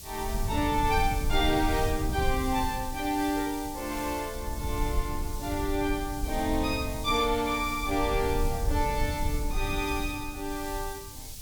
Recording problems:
hiss; SNR 12 dB
rumble; below 82 Hz, SNR 5 dB

